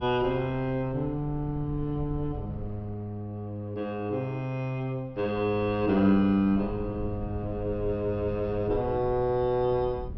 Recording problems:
treble missing; nothing above 5.8 kHz
wind on the microphone; below 120 Hz, SNR 13 dB

